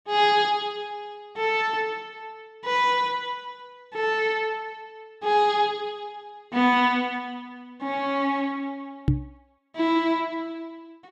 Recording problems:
knock on the microphone; at 9 s; peak +7 dB vs average level

